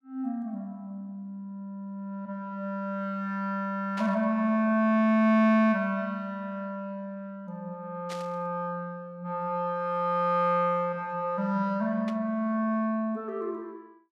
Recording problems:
static burst; at 4 s, at 8 s and at 12 s; peak -8 dB vs average level

